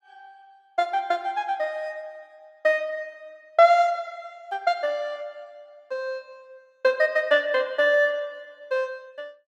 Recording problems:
none

